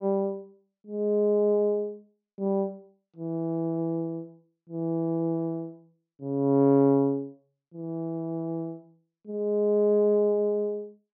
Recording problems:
treble missing; nothing above 6.5 kHz

